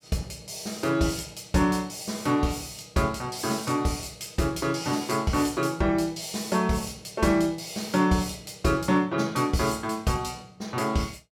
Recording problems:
none

